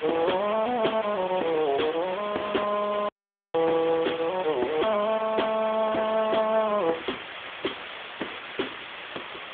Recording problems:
telephone audio; 280 Hz to 3.5 kHz, AMR-NB
distorted audio; soft clipping, signal-to-distortion ratio 13 dB
background hiss; SNR 10 dB
audio cutting out; at 3 s

